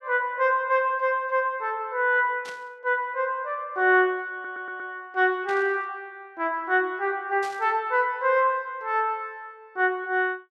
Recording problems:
burst of static; at 2.5 s, at 5.5 s and at 7.5 s; peak -12 dB vs average level
audio stuttering; at 4.5 s

